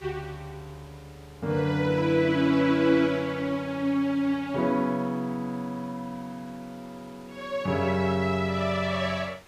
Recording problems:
hiss; slope -3 dB per octave, SNR 26 dB

